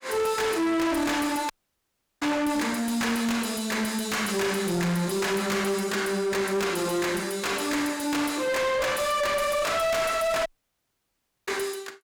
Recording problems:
distorted audio; soft clipping, signal-to-distortion ratio 7 dB
audio cutting out; at 1.5 s for 0.5 s and at 10 s for 1 s

